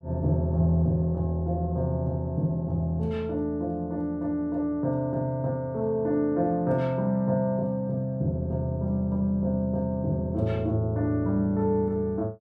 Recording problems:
none

